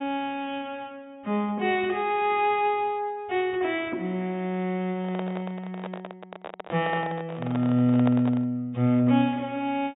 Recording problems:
treble missing; nothing above 4 kHz
handling noise; from 5 to 8.5 s; peak -3 dB vs average level

